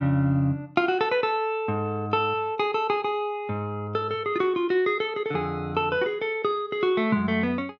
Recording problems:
none

